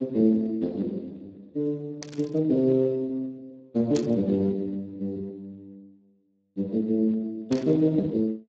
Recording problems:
lossy compression; Speex, log-spectral distance 2 dB
static burst; at 2 s, at 4 s and at 7.5 s; peak -5 dB vs average level

